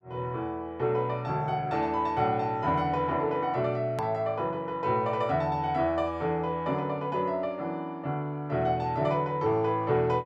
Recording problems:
edit click; at 4 s

